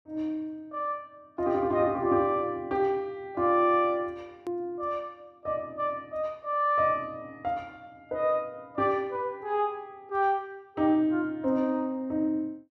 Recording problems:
edit click; at 4.5 s

